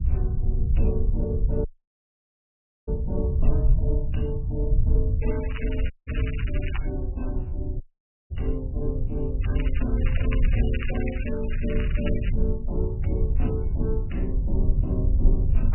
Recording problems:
codec artefacts; MP3, log-spectral distance 3 dB, nothing above 2.9 kHz
low-frequency rumble; below 76 Hz, SNR -6 dB
audio cutting out; at 1.5 s for 1 s, at 6 s and at 8 s
crackling; from 5 to 7 s and from 9.5 to 12 s; loose cable, SNR 7 dB

